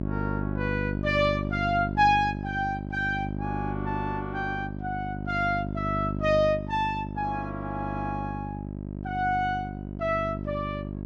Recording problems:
hum; 50 Hz, harmonics up to 700 Hz, SNR 5 dB

